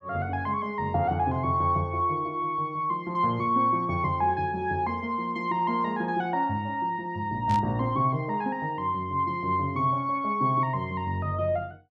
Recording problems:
static burst; at 7.5 s; peak -10 dB vs average level

